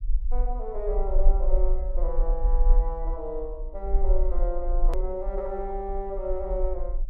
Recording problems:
low-frequency rumble; below 36 Hz, strongest tone 20 Hz, SNR -4 dB
click at an edit; at 5 s

